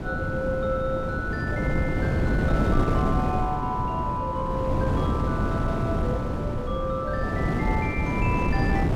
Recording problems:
wind on the microphone; below 310 Hz, SNR -3 dB

